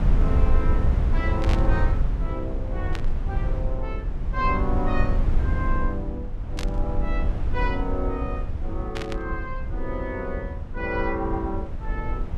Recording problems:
low-frequency rumble; below 74 Hz, SNR -4 dB
static burst; 4 times, first at 1.5 s; peak +1 dB vs average level

